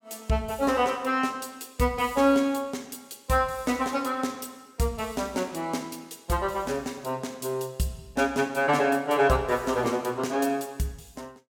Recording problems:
none

